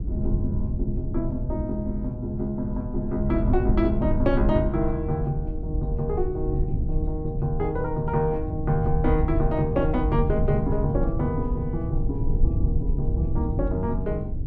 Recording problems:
rumble; below 94 Hz, SNR 2 dB

